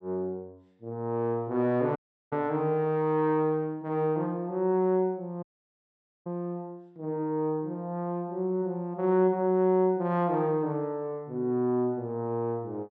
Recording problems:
audio cutting out; at 2 s and at 5.5 s for 1 s

